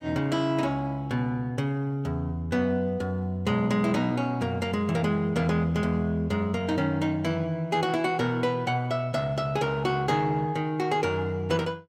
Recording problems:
none

